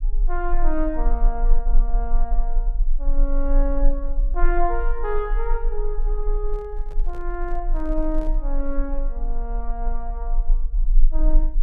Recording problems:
low-frequency rumble; below 32 Hz, strongest tone 22 Hz, SNR -4 dB
handling noise; from 6.5 to 8.5 s; peak -9 dB vs average level

